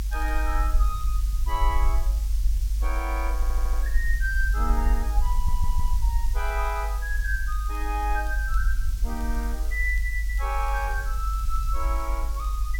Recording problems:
hiss; slope +2 dB per octave, SNR 13 dB
low-frequency rumble; below 50 Hz, SNR -4 dB
crackling; vinyl, SNR 29 dB
stutter; at 3.5 s and at 5.5 s

